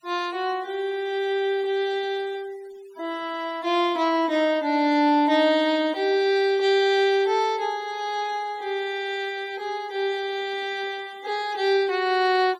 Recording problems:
denoising artefacts; signal-to-artefact ratio 24 dB

